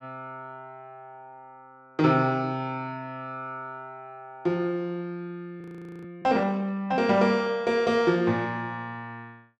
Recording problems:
audio freezing; at 5.5 s

